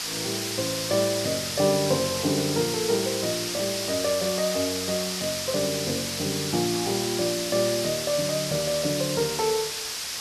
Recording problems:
background hiss; slope +2 dB per octave, SNR 1 dB

